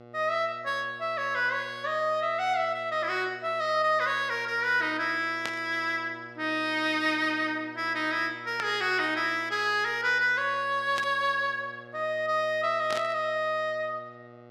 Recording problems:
hum; 60 Hz, harmonics up to 2.8 kHz, SNR 22 dB
static burst; 4 times, first at 5.5 s; peak -2 dB vs average level

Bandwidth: 14.5 kHz